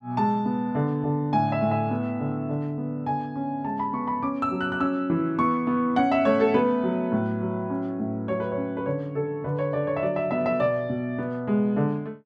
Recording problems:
none

